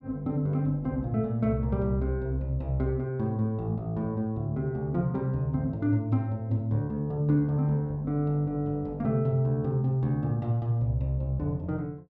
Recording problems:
none

